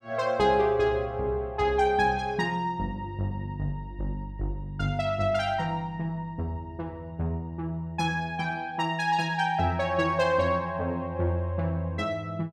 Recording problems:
none

